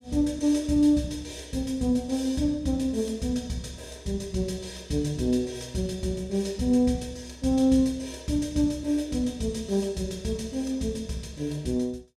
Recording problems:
none

